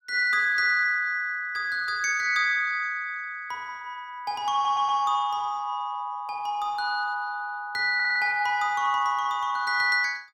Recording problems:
audio stuttering; at 4.5 s and at 8 s

